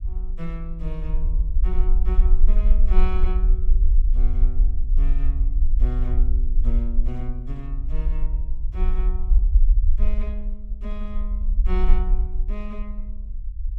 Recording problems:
low-frequency rumble; below 42 Hz, strongest tone 20 Hz, SNR -12 dB

